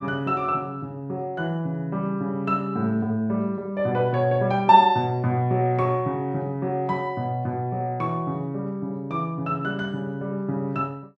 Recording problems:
none

